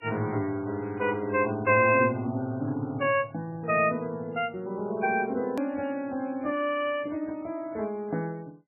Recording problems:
codec artefacts; MP3, log-spectral distance 3 dB, nothing above 2.6 kHz
edit click; at 5.5 s

